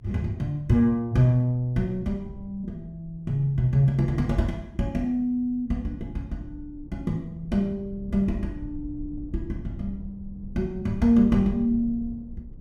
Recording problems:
low-frequency rumble; below 120 Hz, SNR 17 dB

